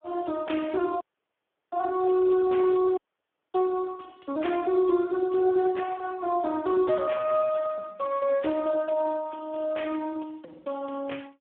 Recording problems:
phone line; 220 Hz to 2 kHz, Speex
audio cutting out; at 1 s for 0.5 s and at 3 s for 0.5 s

